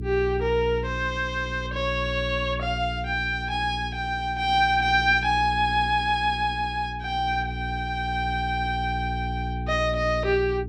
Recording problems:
hum; 60 Hz, harmonics up to 420 Hz, SNR 8 dB

